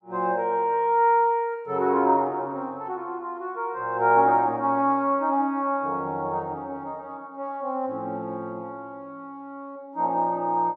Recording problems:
none

